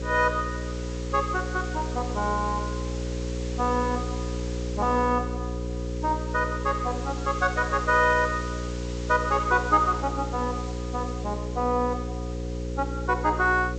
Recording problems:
treble missing; nothing above 8 kHz
hum; 60 Hz, harmonics up to 540 Hz, SNR 6 dB
hiss; slope -1 dB per octave, SNR 17 dB

